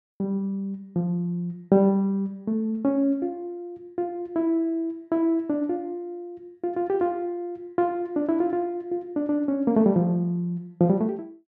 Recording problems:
none

